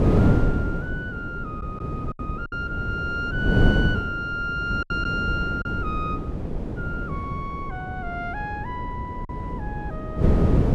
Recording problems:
wind noise; below 270 Hz, SNR -3 dB
lost packets; 3% of the sound replaced, filled with silence

